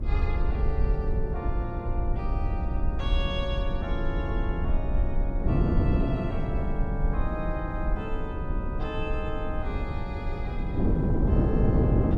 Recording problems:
hiss; SNR 26 dB
rumble; below 62 Hz, SNR -3 dB
wind on the microphone; below 270 Hz, SNR -4 dB

